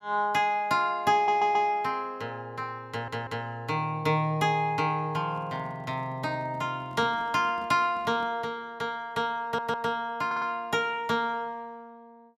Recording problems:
stutter; 4 times, first at 1 s
microphone handling noise; from 5 to 8.5 s; peak -12 dB vs average level

